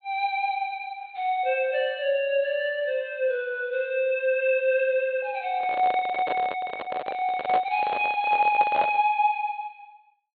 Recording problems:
treble missing; nothing above 4.3 kHz
handling noise; from 5.5 to 9 s; peak 0 dB vs average level

